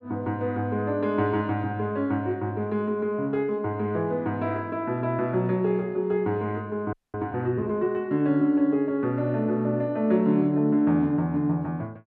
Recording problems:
audio freezing; at 7 s

